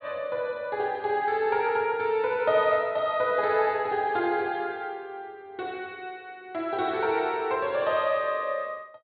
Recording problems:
treble cut off; nothing above 4.5 kHz

